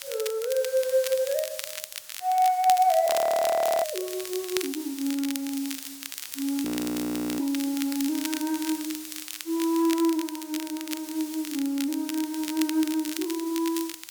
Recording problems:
hiss; slope +3 dB per octave, SNR 13 dB
crackle; vinyl, SNR 10 dB
frozen audio; at 3 s for 1 s and at 6.5 s for 1 s

